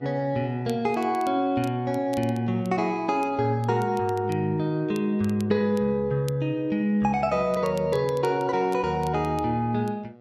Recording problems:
hum; 60 Hz, harmonics up to 2 kHz, SNR 26 dB
crackling; vinyl, SNR 25 dB

